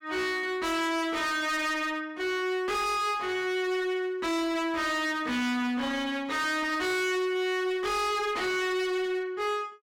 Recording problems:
distortion; hard clipping, uneven, signal-to-distortion ratio 6 dB

